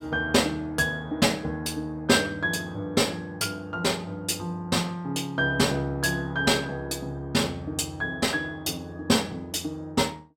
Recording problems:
none

